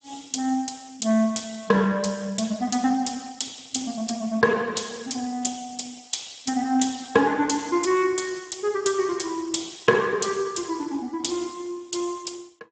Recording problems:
codec artefacts; Speex, log-spectral distance 9 dB, nothing above 7.8 kHz

